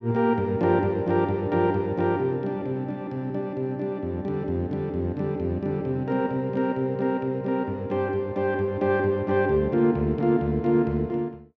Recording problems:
none

